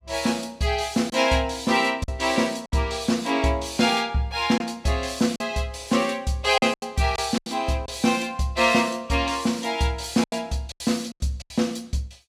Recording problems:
lost packets; 6% of the sound replaced, filled with silence

